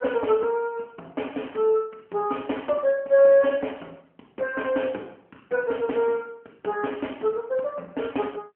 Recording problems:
telephone audio; 260 Hz to 3 kHz, AMR-NB

